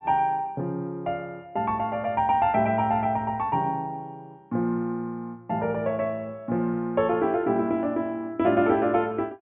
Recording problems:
low-pass filter; nothing above 3.2 kHz

